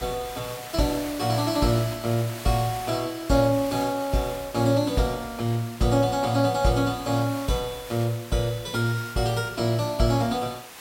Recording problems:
hiss; slope -1 dB per octave, SNR 15 dB

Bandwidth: 16 kHz